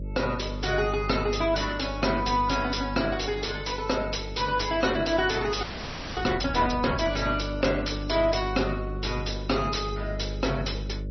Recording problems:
lossy compression; MP3, log-spectral distance 8 dB, nothing above 5.8 kHz
distorted audio; soft clipping, signal-to-distortion ratio 10 dB
hum; 50 Hz, harmonics up to 600 Hz, SNR 9 dB
audio freezing; at 5.5 s for 0.5 s

